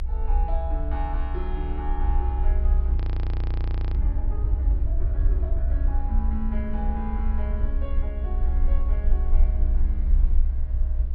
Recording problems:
low-pass filter; nothing above 5.5 kHz
rumble; below 62 Hz, SNR -11 dB
audio freezing; at 3 s for 1 s

